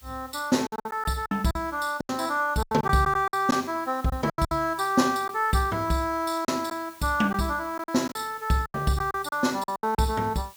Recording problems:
hiss; slope +1 dB per octave, SNR 23 dB
lost packets; 11% of the sound replaced, filled with silence

